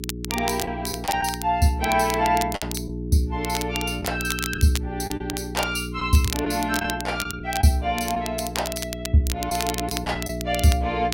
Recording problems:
hum; 60 Hz, harmonics up to 420 Hz, SNR 8 dB
crackling; vinyl, SNR 9 dB
lost packets; 4% of the sound replaced, filled with the last packet

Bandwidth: 16 kHz